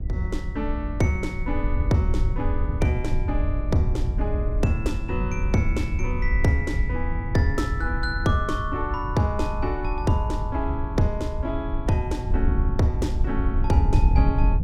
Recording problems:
wind on the microphone; below 82 Hz, SNR 0 dB

